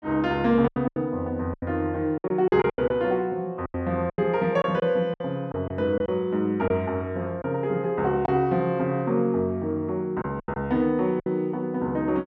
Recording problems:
packet loss; 9% of the sound replaced, filled with silence

